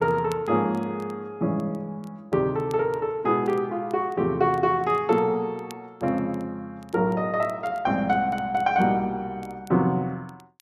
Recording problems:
crackle; vinyl, SNR 30 dB

